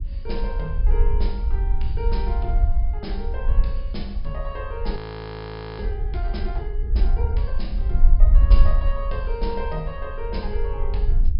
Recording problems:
low-pass filter; nothing above 5.5 kHz
rumble; below 54 Hz, SNR -9 dB
audio freezing; at 5 s for 1 s

